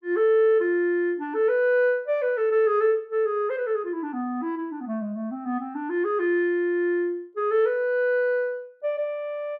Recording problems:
none

